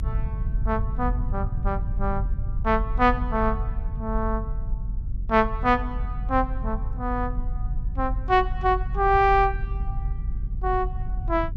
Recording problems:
low-frequency rumble; below 68 Hz, strongest tone 44 Hz, SNR 5 dB

